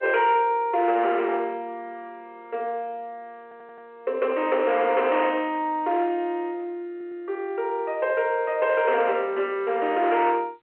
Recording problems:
phone line; 320 Hz to 3.2 kHz, G.711
distorted audio; hard clipping, signal-to-distortion ratio 11 dB
audio stuttering; at 3.5 s and at 7 s

